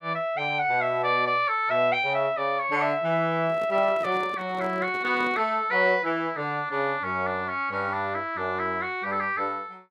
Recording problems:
microphone handling noise; from 3.5 to 5.5 s; peak -10 dB vs average level

